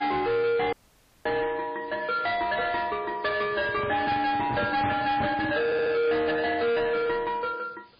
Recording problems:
lossy codec; MP3, log-spectral distance 4 dB, nothing above 4.6 kHz
distortion; soft clipping, signal-to-distortion ratio 8 dB
hiss; SNR 30 dB
dropout; at 0.5 s for 0.5 s
microphone handling noise; from 3.5 to 5.5 s; peak +1 dB vs average level
stutter; at 5.5 s

